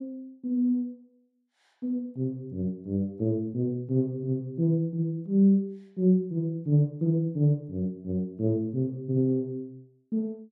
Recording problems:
none

